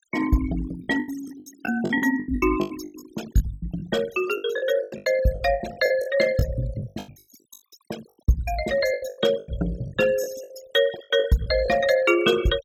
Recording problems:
noise reduction artefacts; signal-to-artefact ratio 16 dB
lost packets; 18% of the sound replaced, filled with the last packet

